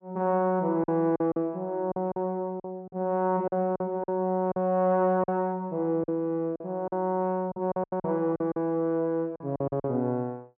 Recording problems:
packet loss; 10% of the sound replaced, filled with silence

